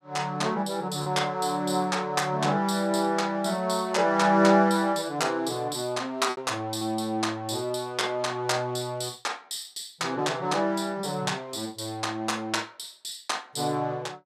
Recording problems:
packet loss; 1.2% of the sound replaced, filled with repeated pitch periods

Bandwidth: 15 kHz